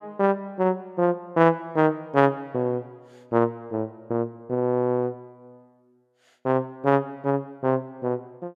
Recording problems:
none

